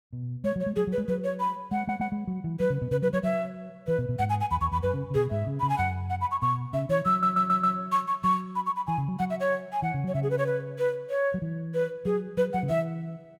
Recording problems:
audio stuttering; at 2 s and at 7 s

